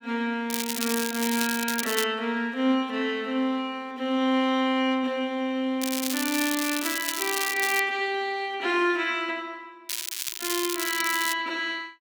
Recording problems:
crackle; until 2 s, from 6 to 8 s and from 10 to 11 s; loose cable, SNR 3 dB

